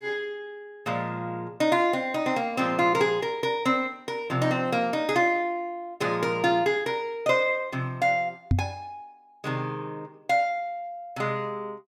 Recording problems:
microphone bump; at 8.5 s; peak +6 dB vs average level

